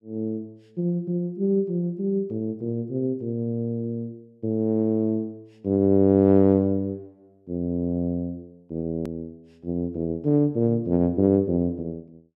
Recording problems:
hard cut with a click; at 9 s

